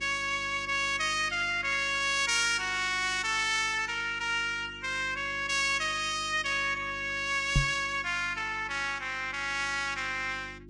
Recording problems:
codec artefacts; Vorbis, log-spectral distance 3 dB, nothing above 10.1 kHz
mains hum; 50 Hz, harmonics up to 350 Hz, SNR 21 dB
microphone bump; at 7.5 s; peak +5 dB vs average level

